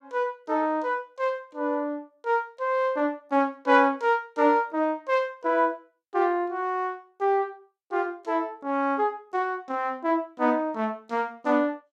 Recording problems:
none

